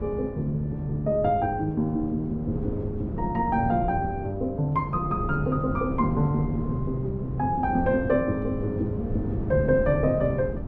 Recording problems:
treble missing; nothing above 8 kHz
wind on the microphone; below 270 Hz, SNR 7 dB

